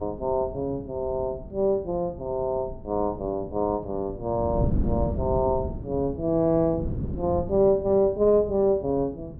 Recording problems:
wind on the microphone; below 220 Hz, SNR 9 dB

